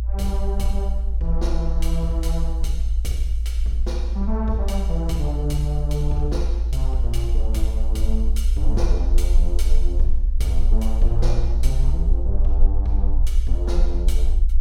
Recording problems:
low-frequency rumble; below 56 Hz, SNR -6 dB

